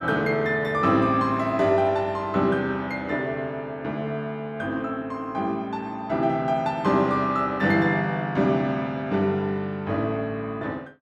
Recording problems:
none

